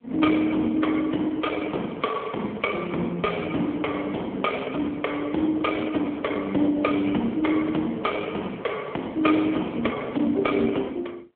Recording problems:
phone line; 240 Hz to 3.5 kHz, AMR-NB

